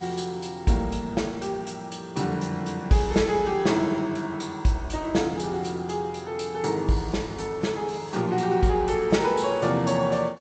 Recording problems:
codec artefacts; Vorbis, then G.722, log-spectral distance 4 dB, nothing above 8 kHz

